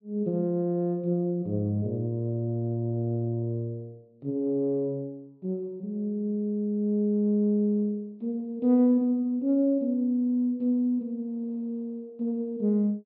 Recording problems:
low-pass filter; nothing above 5.5 kHz

